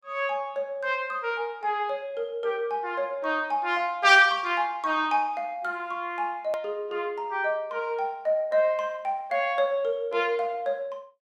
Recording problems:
click at an edit; at 6.5 s

